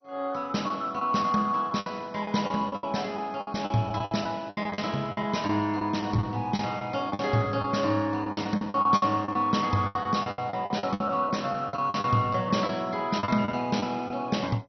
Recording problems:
lossy codec; MP2, log-spectral distance 4 dB, nothing above 6 kHz
packet loss; 13% of the sound replaced, filled with the last packet

